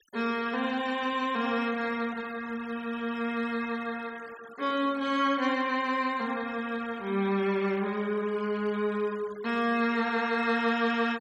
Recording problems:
noise reduction artefacts; signal-to-artefact ratio 21 dB

